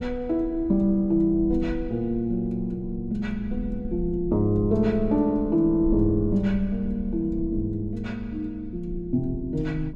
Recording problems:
rumble; below 58 Hz, SNR 14 dB

